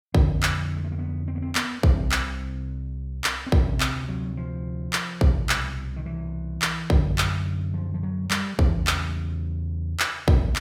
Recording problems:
none

